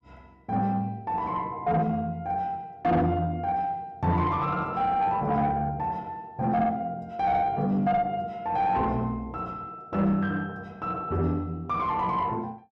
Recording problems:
distortion; soft clipping, signal-to-distortion ratio 11 dB

